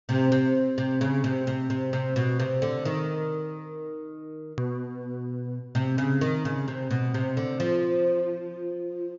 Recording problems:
low-pass filter; nothing above 7.3 kHz
hard cut with a click; at 4.5 s

